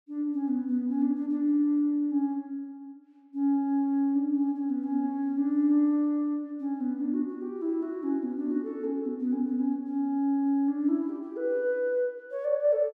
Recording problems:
none

